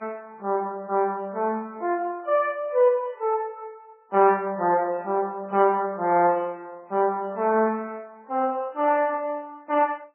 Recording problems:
lossy codec; Vorbis, then MP3, log-spectral distance 2 dB, nothing above 2.7 kHz

